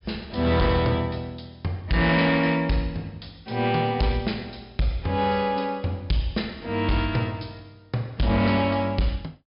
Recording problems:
low-pass filter; nothing above 5.5 kHz
distortion; hard clipping, signal-to-distortion ratio 12 dB

